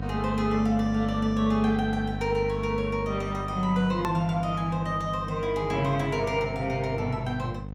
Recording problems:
mains hum; 50 Hz, harmonics up to 1 kHz, SNR 8 dB
edit click; at 4 s

